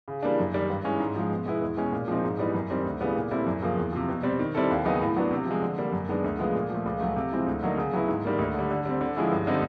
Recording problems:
none

